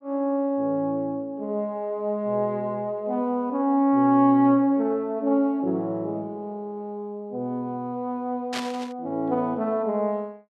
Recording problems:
burst of static; at 8.5 s; peak -2 dB vs average level

